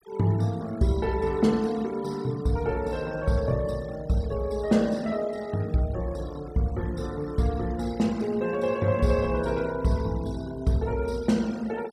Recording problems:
denoising artefacts; signal-to-artefact ratio 21 dB

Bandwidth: 15 kHz